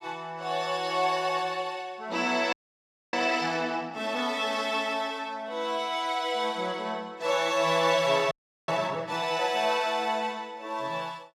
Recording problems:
frozen audio; at 2.5 s for 0.5 s and at 8.5 s

